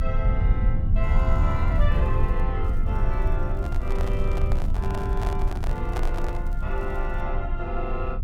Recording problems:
rumble; below 72 Hz, strongest tone 26 Hz, SNR -7 dB
crackle; from 1 to 2.5 s, from 2.5 to 4.5 s and from 4.5 to 7 s; loose cable, SNR 28 dB
handling noise; from 3.5 to 6.5 s; peak +4 dB vs average level

